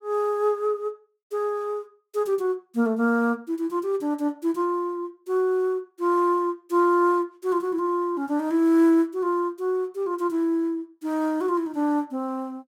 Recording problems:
none

